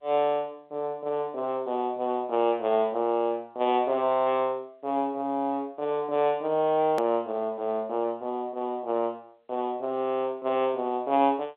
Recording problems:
phone line; 170 Hz to 3.6 kHz, G.711
click at an edit; at 7 s

